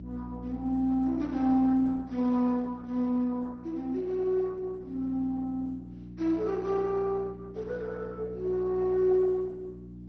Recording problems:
lossy compression; MP2, then Opus, log-spectral distance 2 dB
mains hum; 60 Hz, harmonics up to 360 Hz, SNR 14 dB

